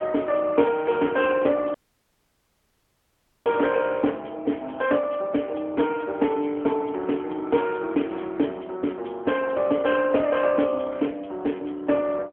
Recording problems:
telephone audio; 220 Hz to 3.3 kHz, AMR-NB
dropout; at 1.5 s for 1.5 s

